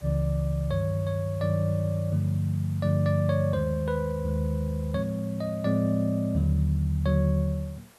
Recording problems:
background hiss; slope -3 dB per octave, SNR 27 dB

